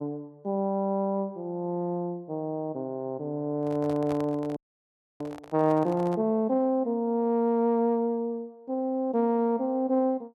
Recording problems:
microphone handling noise; from 3.5 to 6 s; peak -8 dB vs average level
audio freezing; at 4.5 s for 0.5 s

